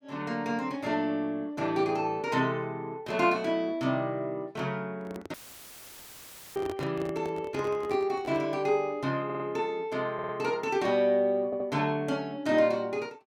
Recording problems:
handling noise; from 5 to 8.5 s; peak -4 dB vs average level
audio cutting out; at 5.5 s for 1 s; filled with static
audio stuttering; at 9.5 s, at 10 s and at 11 s

